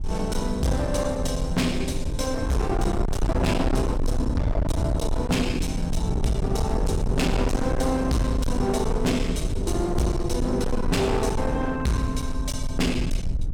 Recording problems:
distortion; hard clipping, uneven, signal-to-distortion ratio 5 dB
low-frequency rumble; below 110 Hz, SNR 3 dB

